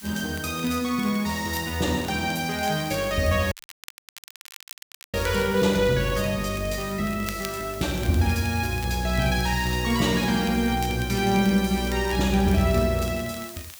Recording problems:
hiss; slope +2 dB per octave, SNR 16 dB
crackle; vinyl, SNR 20 dB
audio cutting out; at 3.5 s for 1.5 s

